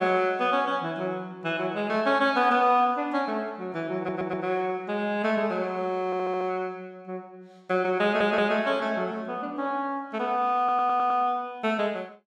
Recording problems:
audio stuttering; 4 times, first at 4 s

